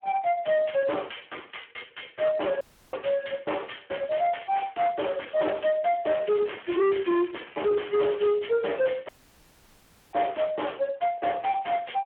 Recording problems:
phone line; 300 Hz to 3.2 kHz, Speex
distortion; soft clipping, signal-to-distortion ratio 7 dB
audio cutting out; at 2.5 s and at 9 s for 1 s
crackling; from 6 to 8.5 s; loose cable, SNR 19 dB

